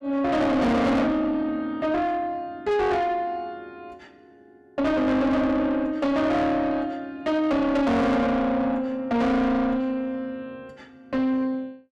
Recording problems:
distortion; soft clipping, signal-to-distortion ratio 7 dB

